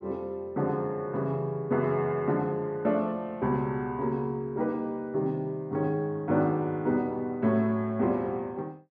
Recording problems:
none

